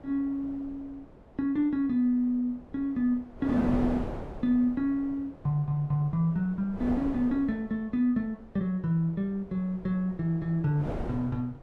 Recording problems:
wind on the microphone; below 560 Hz, SNR 11 dB

